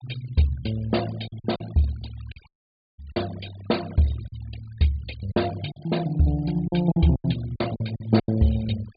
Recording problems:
low-pass filter; nothing above 4.8 kHz
denoising artefacts; signal-to-artefact ratio 18 dB
lost packets; 8% of the sound replaced, filled with silence
dropout; at 2.5 s for 0.5 s

